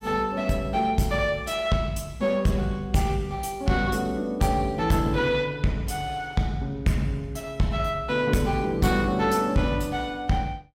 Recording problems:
distorted audio; soft clipping, signal-to-distortion ratio 11 dB

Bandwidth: 16.5 kHz